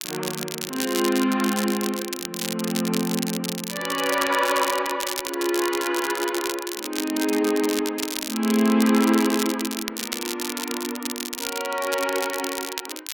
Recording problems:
crackling; vinyl, SNR 6 dB

